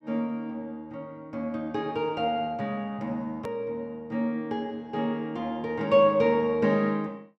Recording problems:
click at an edit; at 3.5 s

